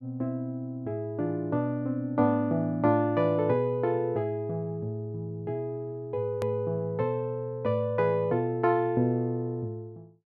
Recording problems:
edit click; at 6.5 s

